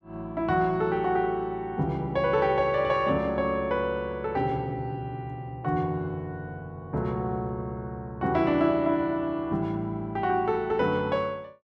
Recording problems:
none

